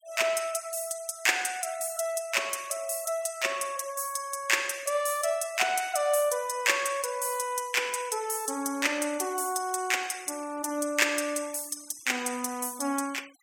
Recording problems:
denoising artefacts; signal-to-artefact ratio 21 dB

